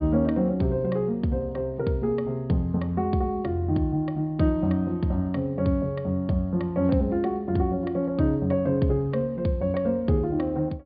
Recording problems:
treble missing; nothing above 4.8 kHz

